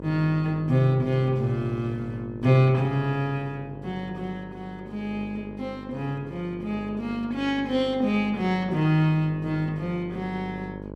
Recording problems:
hum; 50 Hz, harmonics up to 1.1 kHz, SNR 14 dB

